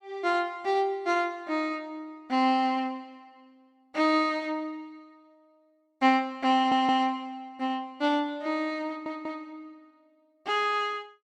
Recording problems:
stutter; at 6.5 s and at 9 s

